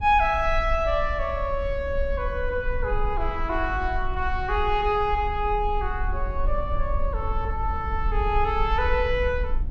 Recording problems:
low-frequency rumble; below 54 Hz, strongest tone 20 Hz, SNR 6 dB

